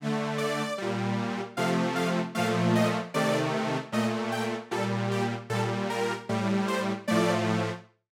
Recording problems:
none

